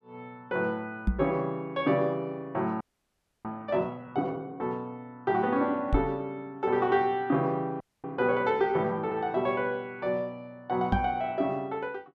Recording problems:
microphone bump; at 1 s, at 6 s and at 11 s; peak +6 dB vs average level
audio freezing; at 3 s for 0.5 s and at 8 s

